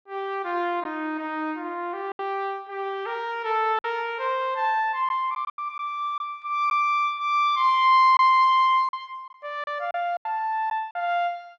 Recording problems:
packet loss; 5% of the sound replaced, filled with silence

